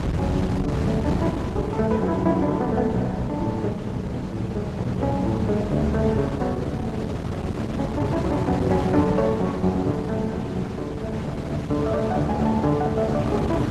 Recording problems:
lossy codec; Opus, log-spectral distance 3 dB
wind on the microphone; below 320 Hz, SNR 4 dB

